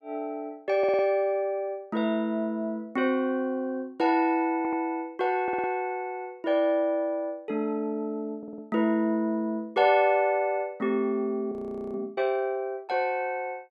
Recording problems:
audio stuttering; 4 times, first at 1 s
frozen audio; at 12 s

